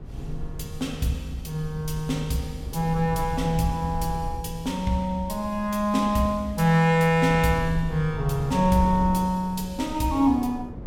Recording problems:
low-frequency rumble; below 100 Hz, SNR 13 dB
wind noise; below 420 Hz, SNR 20 dB

